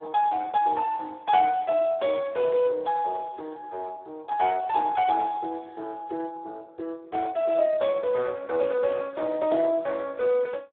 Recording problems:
phone line; 340 Hz to 4 kHz, Speex

